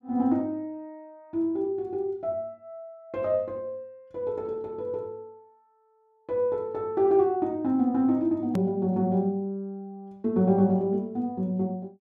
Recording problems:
hard cut with a click; at 8.5 s

